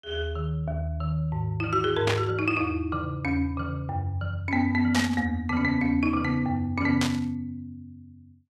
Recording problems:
static burst; at 2 s, at 5 s and at 7 s; peak +3 dB vs average level

